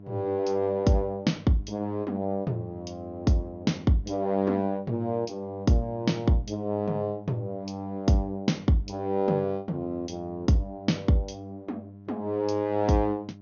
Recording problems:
treble missing; nothing above 6.6 kHz
electrical hum; 50 Hz, harmonics up to 700 Hz, SNR 19 dB

